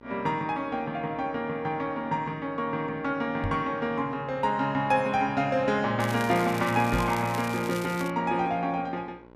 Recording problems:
hum; 60 Hz, harmonics up to 2.5 kHz, SNR 24 dB
knock on the microphone; at 3.5 s and at 7 s; peak -1 dB vs average level
crackling; from 6 to 8 s; loose cable, SNR 14 dB

